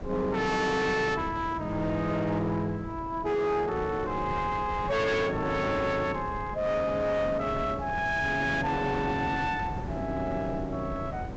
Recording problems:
treble missing; nothing above 8 kHz
distortion; hard clipping, signal-to-distortion ratio 10 dB
wind on the microphone; below 390 Hz, SNR 11 dB

